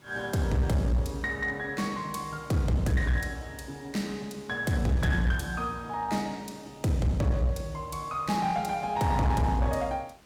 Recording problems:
distortion; hard clipping, uneven, signal-to-distortion ratio 10 dB
background hiss; slope -3 dB per octave, SNR 28 dB

